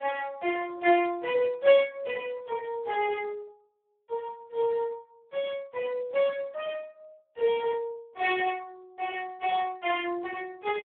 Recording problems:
phone line; 370 Hz to 3.4 kHz, Speex

